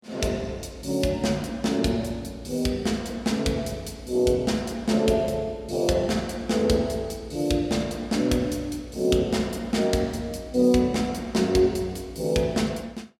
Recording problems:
none

